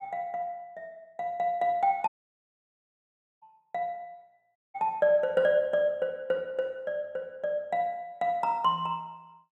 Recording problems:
audio cutting out; at 2 s for 1.5 s and at 4.5 s

